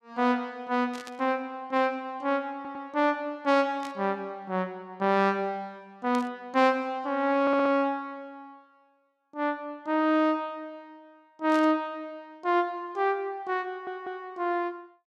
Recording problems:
burst of static; 4 times, first at 1 s; peak -9 dB vs average level
stutter; at 2.5 s, at 7.5 s and at 14 s

